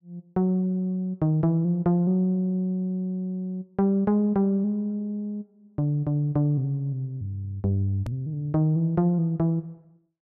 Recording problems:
click at an edit; at 8 s

